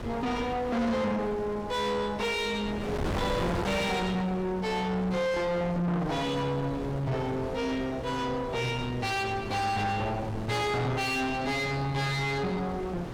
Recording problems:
distortion; soft clipping, signal-to-distortion ratio 5 dB
wind noise; below 950 Hz, SNR 8 dB

